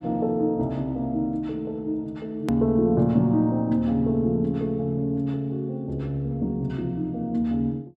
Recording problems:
hard cut with a click; at 2.5 s

